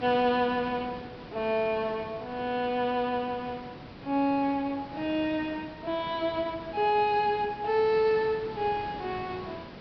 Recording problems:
treble missing; nothing above 5.5 kHz
hiss; SNR 15 dB

